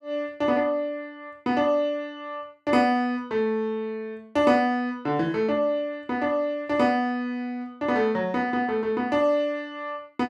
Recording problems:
none

